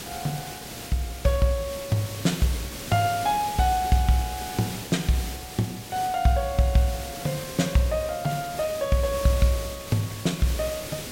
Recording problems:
hiss; SNR 10 dB

